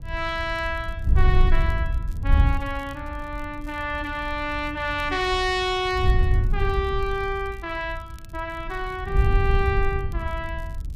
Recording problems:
wind noise; below 80 Hz, SNR -1 dB
crackling; vinyl, SNR 29 dB

